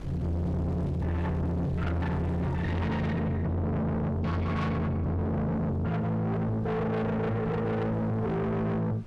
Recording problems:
distorted audio; soft clipping, signal-to-distortion ratio 6 dB
wind on the microphone; below 370 Hz, SNR 17 dB

